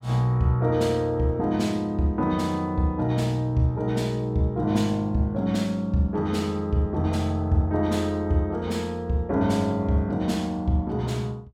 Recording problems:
none

